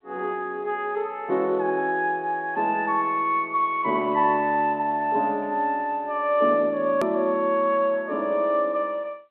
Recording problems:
telephone audio; 220 Hz to 3.5 kHz, G.711
hard cut with a click; at 7 s

